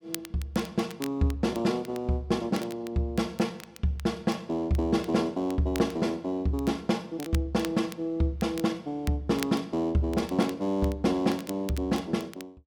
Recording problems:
crackle; vinyl, SNR 18 dB

